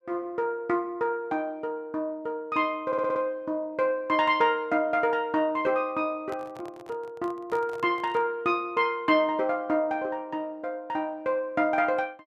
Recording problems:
audio stuttering; at 3 s
handling noise; from 6 to 8.5 s; peak -10 dB vs average level

